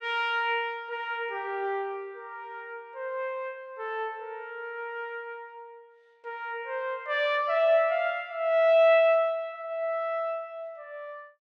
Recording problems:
none

